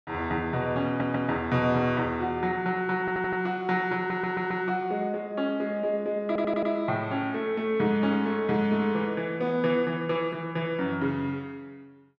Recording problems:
audio stuttering; 4 times, first at 1 s

